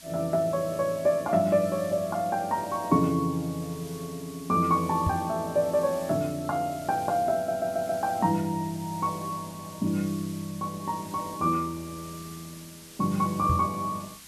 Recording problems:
background hiss; SNR 18 dB
knock on the microphone; at 5 s and at 14 s; peak +4 dB vs average level
audio stuttering; at 7.5 s

